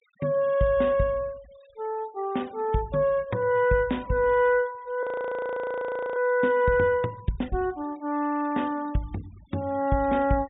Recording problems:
low-pass filter; nothing above 4 kHz
noise reduction artefacts; signal-to-artefact ratio 27 dB
audio freezing; at 5 s for 1 s

